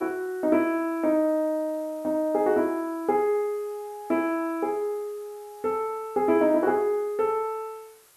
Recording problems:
background hiss; slope -1 dB per octave, SNR 28 dB

